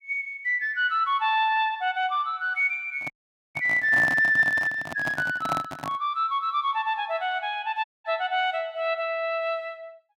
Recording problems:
microphone handling noise; from 3 to 6 s; peak -1 dB vs average level
audio cutting out; at 3 s and at 8 s

